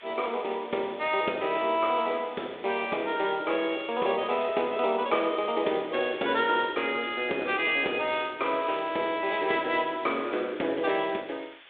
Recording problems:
telephone audio; 260 Hz to 3.6 kHz, G.726
background hiss; SNR 21 dB

